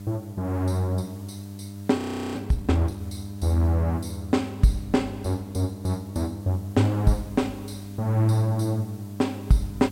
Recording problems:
hum; 50 Hz, harmonics up to 700 Hz, SNR 12 dB
hiss; slope -1 dB per octave, SNR 27 dB
frozen audio; at 2 s

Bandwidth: 16 kHz